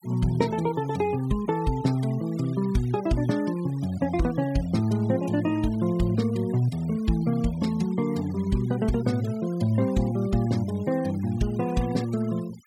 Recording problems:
denoising artefacts; signal-to-artefact ratio 21 dB

